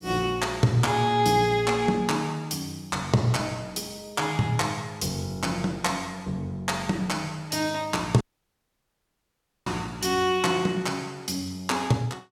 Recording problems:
dropout; at 8 s for 1.5 s

